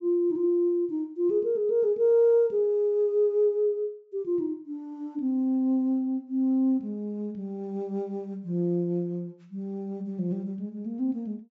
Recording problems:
treble missing; nothing above 8 kHz

